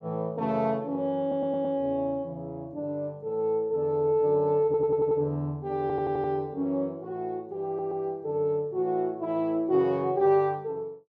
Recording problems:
stutter; 4 times, first at 1 s

